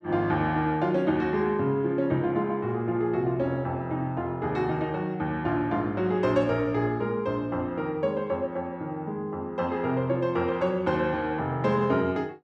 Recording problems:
none

